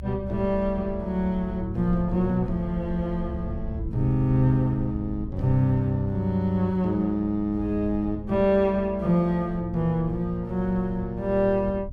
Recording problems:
low-frequency rumble; below 92 Hz, SNR 12 dB

